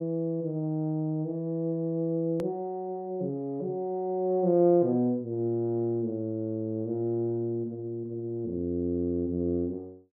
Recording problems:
hard cut with a click; at 2.5 s

